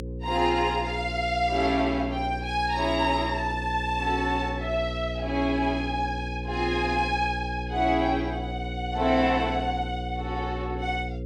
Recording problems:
hum; 60 Hz, harmonics up to 540 Hz, SNR 7 dB

